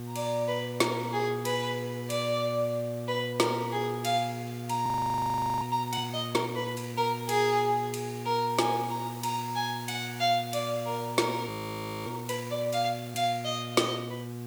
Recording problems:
hum; 60 Hz, harmonics up to 1.2 kHz, SNR 8 dB
hiss; slope +1 dB per octave, SNR 18 dB
audio freezing; at 5 s for 1 s and at 11 s for 0.5 s

